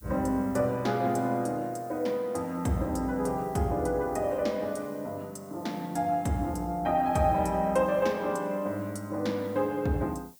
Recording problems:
hiss; SNR 25 dB

